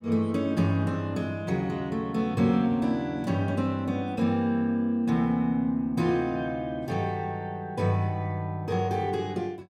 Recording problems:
none

